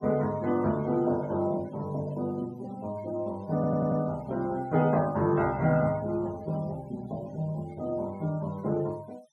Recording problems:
noise reduction artefacts; signal-to-artefact ratio 24 dB
audio stuttering; at 3.5 s

